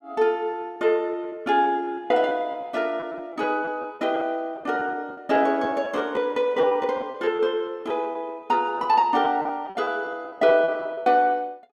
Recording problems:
lost packets; 12% of the sound replaced, filled with repeated pitch periods

